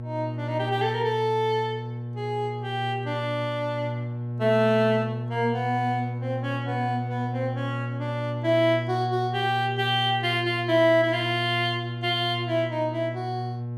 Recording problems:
hum; 60 Hz, harmonics up to 840 Hz, SNR 6 dB

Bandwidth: 15.5 kHz